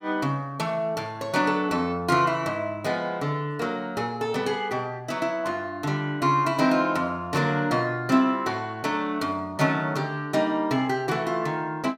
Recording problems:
none

